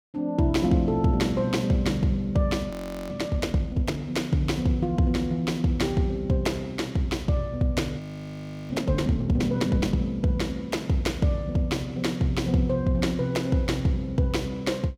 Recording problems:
frozen audio; at 2.5 s and at 8 s for 0.5 s

